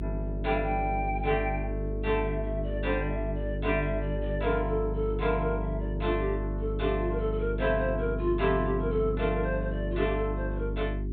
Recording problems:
low-pass filter; nothing above 4 kHz
electrical hum; 50 Hz, harmonics up to 400 Hz, SNR 3 dB

